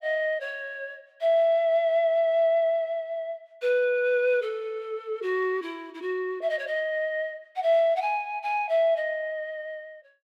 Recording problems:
none

